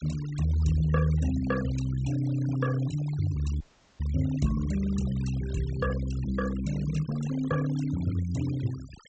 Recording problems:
treble missing; nothing above 8 kHz
denoising artefacts; signal-to-artefact ratio 16 dB
dropout; at 3.5 s

